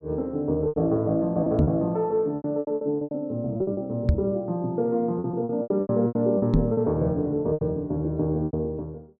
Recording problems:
lost packets; 14% of the sound replaced, filled with repeated pitch periods
microphone bump; at 1.5 s, at 4 s and at 6.5 s; peak +7 dB vs average level

